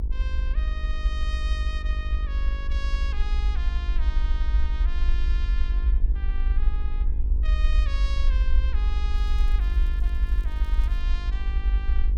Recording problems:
electrical hum; 50 Hz, harmonics up to 1.1 kHz, SNR 6 dB
low-frequency rumble; below 60 Hz, SNR -14 dB
crackle; from 9 to 11 s; loose cable, SNR 20 dB

